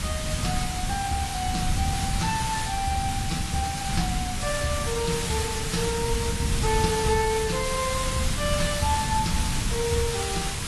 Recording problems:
lossy codec; AAC, log-spectral distance 11 dB
hum; 50 Hz, harmonics up to 300 Hz, SNR 18 dB
hiss; slope 0 dB per octave, SNR 1 dB
low-frequency rumble; below 130 Hz, SNR 4 dB

